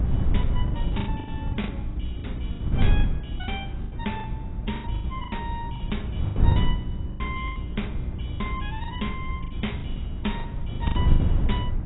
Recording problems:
lossy compression; AAC, log-spectral distance 3 dB, nothing above 3.8 kHz
hum; 60 Hz, harmonics up to 360 Hz, SNR 2 dB
wind noise; below 110 Hz, SNR -6 dB
lost packets; 15% of the sound replaced, filled with the last packet

